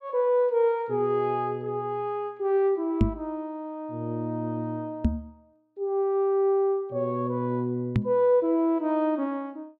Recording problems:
microphone thump; at 3 s, at 5 s and at 8 s; peak +8 dB vs average level

